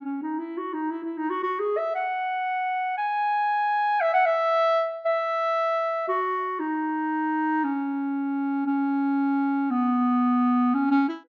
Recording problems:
treble cut off; nothing above 8 kHz

